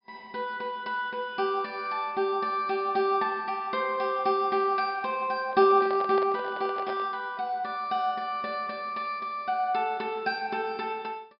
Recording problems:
treble cut off; nothing above 5.5 kHz
handling noise; from 5.5 to 7 s; peak -4 dB vs average level

